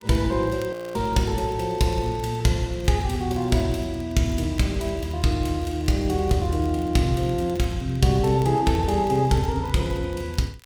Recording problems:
crackling; vinyl, SNR 27 dB
frozen audio; at 0.5 s

